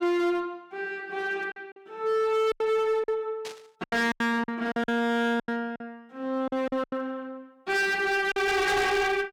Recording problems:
distorted audio; hard clipping, uneven, signal-to-distortion ratio 8 dB
packet loss; 9% of the sound replaced, filled with silence
burst of static; at 3.5 s; peak -8 dB vs average level

